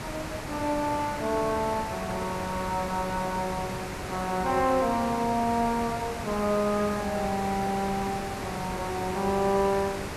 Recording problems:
hiss; slope -5 dB per octave, SNR 7 dB

